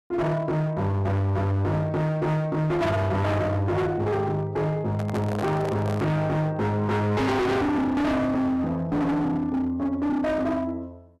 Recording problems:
distortion; hard clipping, signal-to-distortion ratio 6 dB
handling noise; from 5 to 6 s; peak -3 dB vs average level

